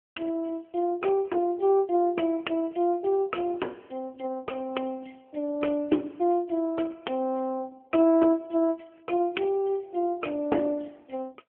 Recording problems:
telephone audio; 260 Hz to 3.2 kHz, AMR-NB

